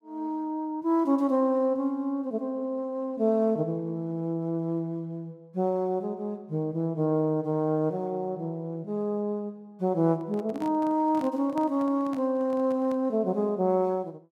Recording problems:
microphone handling noise; from 10 to 13 s; peak -10 dB vs average level

